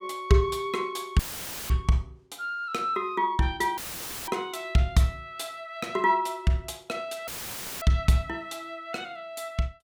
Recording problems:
dropout; at 1 s for 0.5 s, at 4 s for 0.5 s and at 7.5 s for 0.5 s; filled with static

